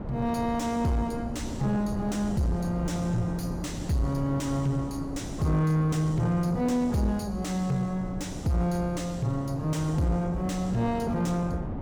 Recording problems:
distorted audio; soft clipping, signal-to-distortion ratio 11 dB
wind noise; below 340 Hz, SNR 9 dB

